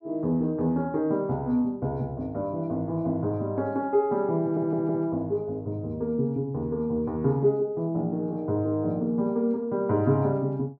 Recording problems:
stutter; at 4.5 s

